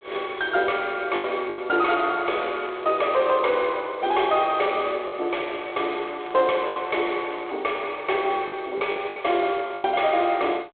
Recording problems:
phone line; 300 Hz to 3.5 kHz, G.726
distortion; soft clipping, signal-to-distortion ratio 10 dB
packet loss; 5% of the sound replaced, filled with the last packet
crackling; from 2 to 3.5 s and from 5 to 8 s; loose cable, SNR 23 dB

